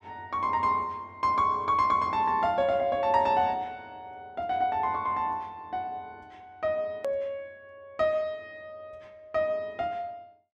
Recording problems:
click at an edit; at 7 s

